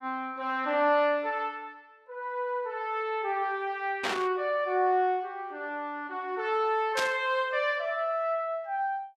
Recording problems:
burst of static; at 4 s and at 7 s; peak +2 dB vs average level

